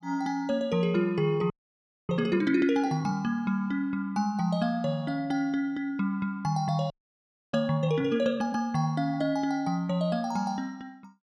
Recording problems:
frozen audio; at 1.5 s for 0.5 s and at 7 s for 0.5 s

